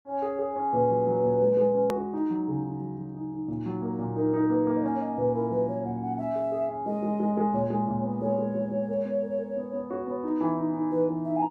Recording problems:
hard cut with a click; at 2 s

